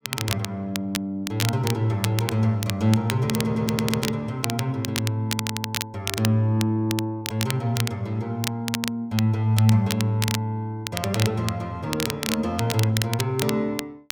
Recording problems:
crackle; vinyl, SNR 6 dB
stutter; at 3.5 s

